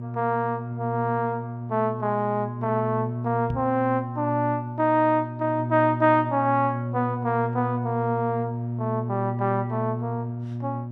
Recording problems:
electrical hum; 60 Hz, harmonics up to 600 Hz, SNR 6 dB
microphone bump; at 3.5 s; peak -3 dB vs average level

